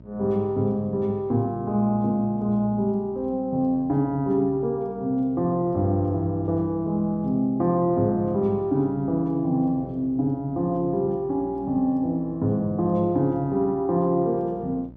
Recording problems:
electrical hum; 60 Hz, harmonics up to 900 Hz, SNR 23 dB

